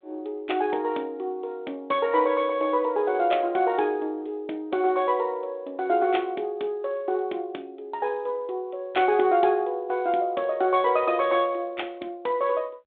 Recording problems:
telephone audio; 240 Hz to 3.6 kHz, G.726

